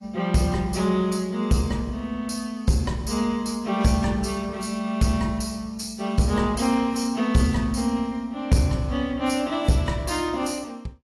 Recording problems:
lossy codec; AAC, log-spectral distance 2 dB, nothing above 11.3 kHz
distorted audio; soft clipping, signal-to-distortion ratio 12 dB

